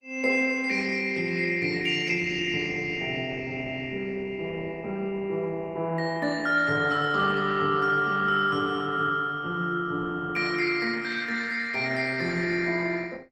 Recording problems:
codec artefacts; Opus, log-spectral distance 4 dB, nothing above 16.1 kHz

